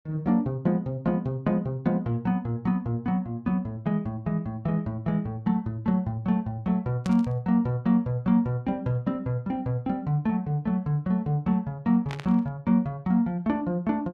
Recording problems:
burst of static; at 7 s and at 12 s; peak -8 dB vs average level

